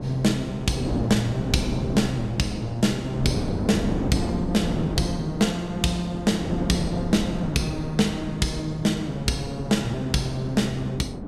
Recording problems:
wind on the microphone; below 350 Hz, SNR 5 dB

